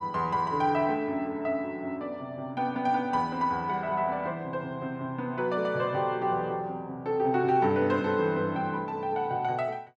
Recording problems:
none

